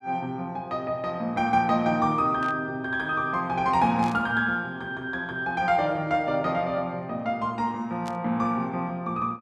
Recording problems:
static burst; at 2.5 s, at 4 s and at 8 s; peak -12 dB vs average level

